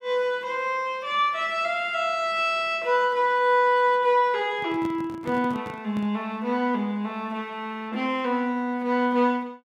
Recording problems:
microphone handling noise; from 4.5 to 6 s; peak -7 dB vs average level

